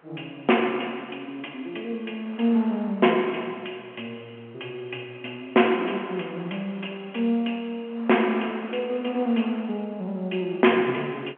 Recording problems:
telephone audio; 260 Hz to 3.2 kHz, G.711
wind noise; below 1.6 kHz, SNR 22 dB

